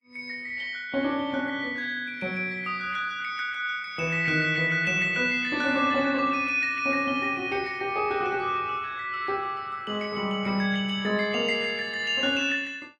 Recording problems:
codec artefacts; Vorbis, then MP3, log-spectral distance 2 dB

